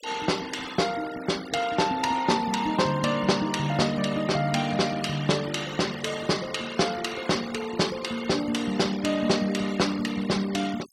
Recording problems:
noise reduction artefacts; signal-to-artefact ratio 15 dB

